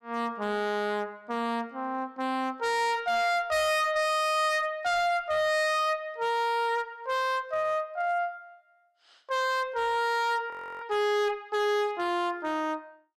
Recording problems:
distortion; hard clipping, uneven, signal-to-distortion ratio 6 dB
audio freezing; at 11 s

